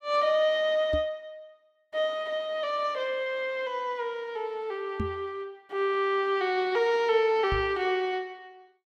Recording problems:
microphone thump; at 1 s, at 5 s and at 7.5 s; peak 0 dB vs average level

